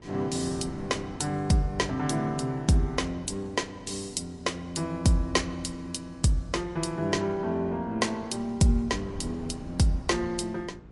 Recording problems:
codec artefacts; MP3, log-spectral distance 3 dB, nothing above 11 kHz
electrical hum; 60 Hz, harmonics up to 840 Hz, SNR 25 dB
wind noise; below 260 Hz, SNR 20 dB

